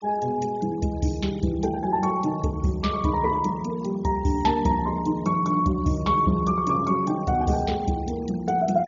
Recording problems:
treble missing; nothing above 6.9 kHz
denoising artefacts; signal-to-artefact ratio 23 dB

